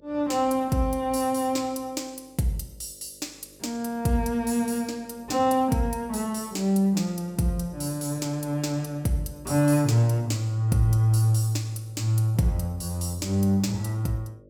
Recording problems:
electrical hum; 50 Hz, harmonics up to 600 Hz, SNR 28 dB

